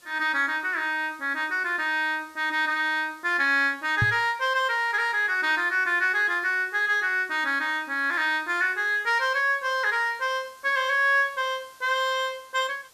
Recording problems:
background hiss; SNR 29 dB
microphone bump; at 4 s; peak +2 dB vs average level

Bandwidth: 14.5 kHz